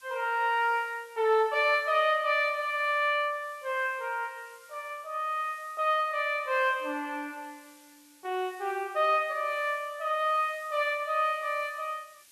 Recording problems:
background hiss; slope +3 dB per octave, SNR 27 dB

